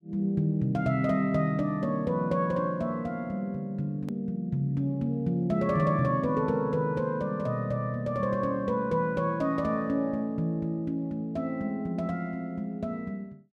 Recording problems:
edit click; at 4 s

